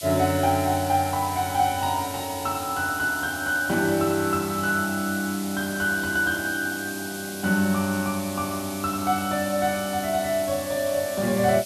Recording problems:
hiss; SNR 10 dB

